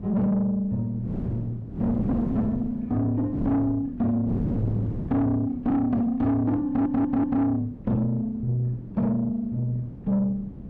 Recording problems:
distortion; soft clipping, signal-to-distortion ratio 10 dB
wind on the microphone; below 270 Hz, SNR 9 dB
audio stuttering; at 6.5 s

